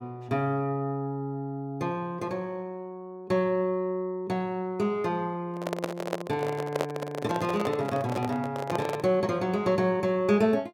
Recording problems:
handling noise; from 5.5 to 9 s; peak +3 dB vs average level

